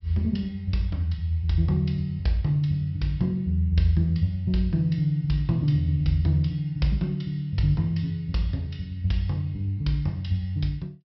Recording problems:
low-pass filter; nothing above 5.6 kHz

